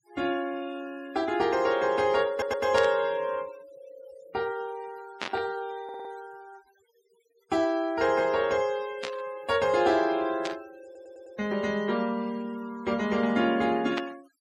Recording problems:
denoising artefacts; signal-to-artefact ratio 23 dB
audio stuttering; at 2.5 s, at 6 s and at 11 s
static burst; 5 times, first at 3 s; peak -1 dB vs average level

